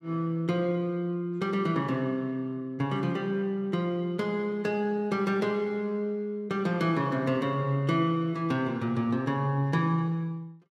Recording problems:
none

